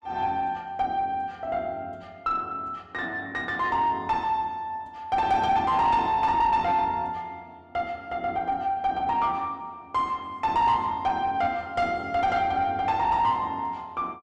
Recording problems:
distortion; soft clipping, signal-to-distortion ratio 10 dB

